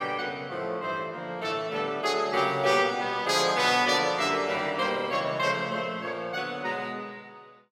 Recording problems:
none

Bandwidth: 17 kHz